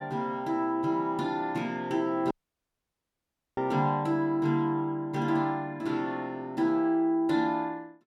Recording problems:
dropout; at 2.5 s for 1.5 s

